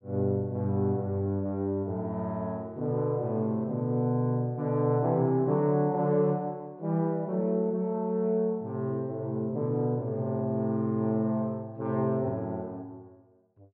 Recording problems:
none

